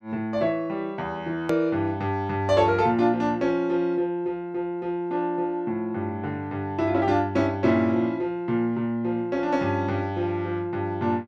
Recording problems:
click at an edit; at 1.5 s

